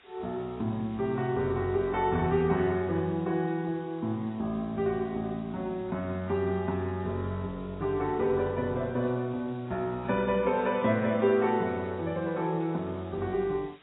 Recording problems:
codec artefacts; AAC, log-spectral distance 5 dB, nothing above 3.4 kHz
background hiss; SNR 28 dB

